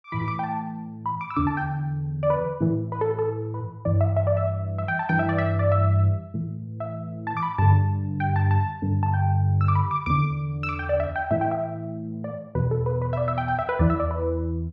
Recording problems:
none

